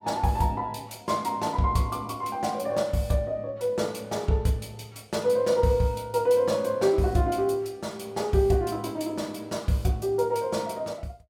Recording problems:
none

